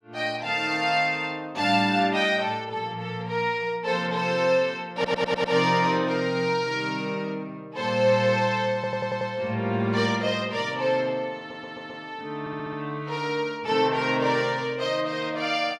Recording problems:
audio stuttering; 4 times, first at 5 s

